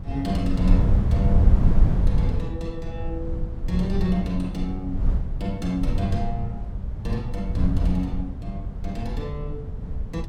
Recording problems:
wind on the microphone; below 94 Hz, SNR -4 dB

